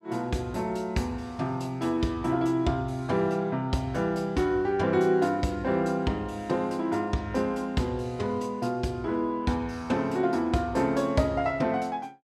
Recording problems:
none

